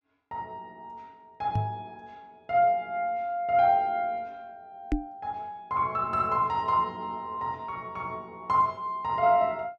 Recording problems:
microphone bump; at 1.5 s and at 5 s; peak +4 dB vs average level

